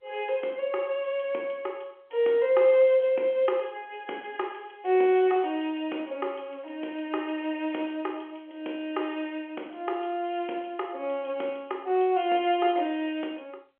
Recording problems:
phone line; 260 Hz to 3.3 kHz, G.711

